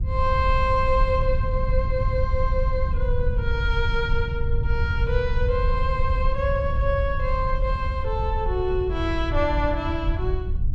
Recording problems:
rumble; below 76 Hz, SNR 0 dB

